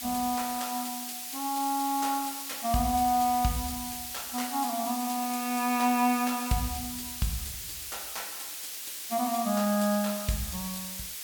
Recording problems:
background hiss; slope +3 dB per octave, SNR 5 dB

